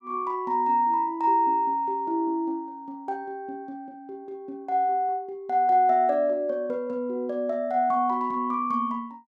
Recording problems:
none

